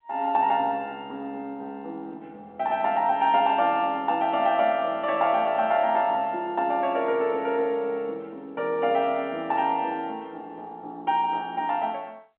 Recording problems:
telephone audio; 280 Hz to 3.5 kHz, G.711

